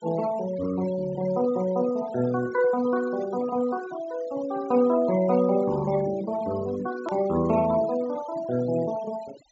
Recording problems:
low-pass filter; nothing above 8 kHz
denoising artefacts; signal-to-artefact ratio 18 dB
click at an edit; at 7 s

